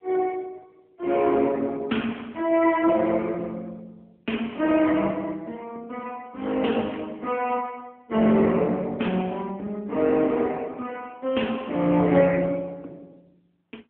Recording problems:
phone line; 190 Hz to 3.3 kHz, AMR-NB

